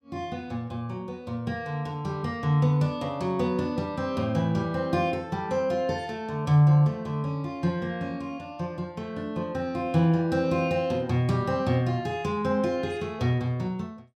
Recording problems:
none

